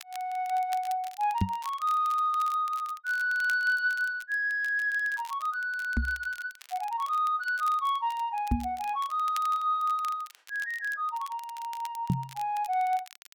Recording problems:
crackle; vinyl, SNR 20 dB
microphone thump; 4 times, first at 1.5 s; peak +6 dB vs average level

